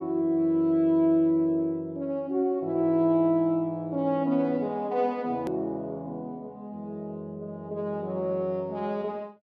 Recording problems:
edit click; at 5.5 s

